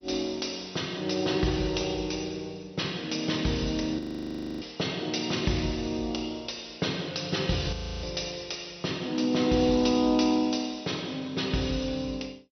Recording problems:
lossy compression; MP2, log-spectral distance 6 dB, nothing above 6 kHz
audio freezing; at 4 s for 0.5 s and at 7.5 s

